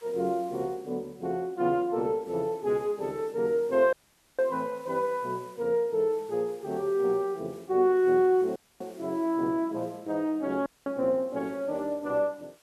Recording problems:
background hiss; slope 0 dB per octave, SNR 29 dB
dropout; at 4 s, at 8.5 s and at 11 s

